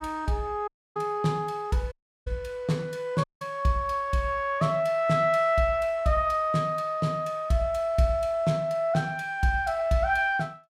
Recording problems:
dropout; at 0.5 s, at 2 s and at 3 s

